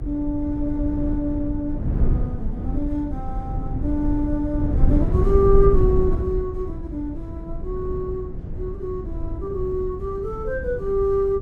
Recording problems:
electrical hum; 60 Hz, harmonics up to 360 Hz, SNR 18 dB
rumble; below 100 Hz, SNR 2 dB

